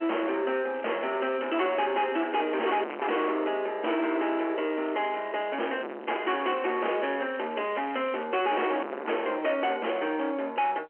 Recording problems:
telephone audio; 260 Hz to 3.1 kHz, G.711
distortion; soft clipping, signal-to-distortion ratio 2 dB
crackling; from 0.5 to 3 s and from 4.5 to 8.5 s; loose cable, SNR 21 dB

